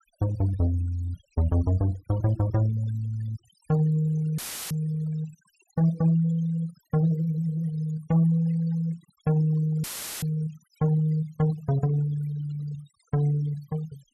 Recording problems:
noise reduction artefacts; signal-to-artefact ratio 19 dB
audio cutting out; at 4.5 s and at 10 s; filled with static

